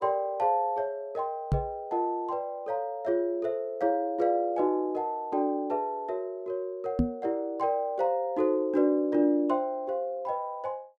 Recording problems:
microphone bump; at 1.5 s and at 7 s; peak +7 dB vs average level

